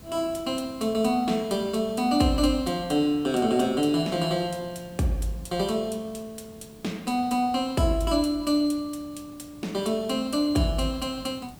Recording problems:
background hiss; SNR 22 dB

